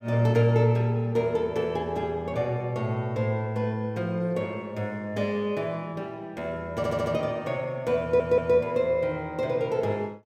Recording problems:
stutter; at 7 s and at 8 s

